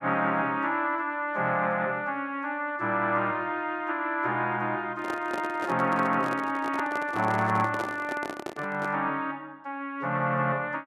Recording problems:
handling noise; from 5 to 9 s; peak -2 dB vs average level

